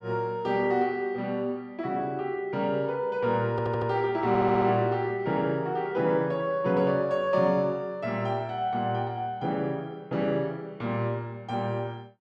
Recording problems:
audio stuttering; at 3.5 s and at 4.5 s

